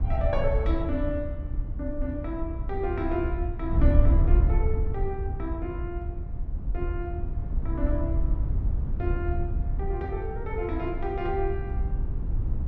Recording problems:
wind on the microphone; below 78 Hz, SNR -3 dB

